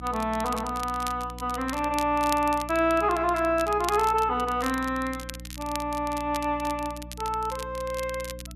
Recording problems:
electrical hum; 60 Hz, harmonics up to 300 Hz, SNR 15 dB
crackling; vinyl, SNR 14 dB

